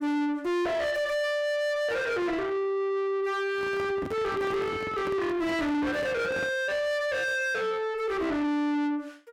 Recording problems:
distortion; soft clipping, signal-to-distortion ratio 6 dB
microphone handling noise; from 3.5 to 6.5 s; peak -3 dB vs average level

